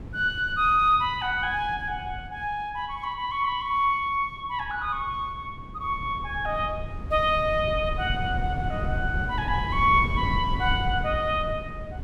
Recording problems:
wind on the microphone; below 140 Hz, SNR 8 dB

